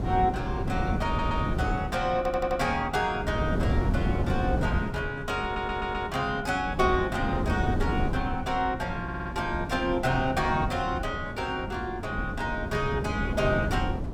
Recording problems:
wind on the microphone; below 250 Hz, SNR 3 dB
stutter; 4 times, first at 1 s

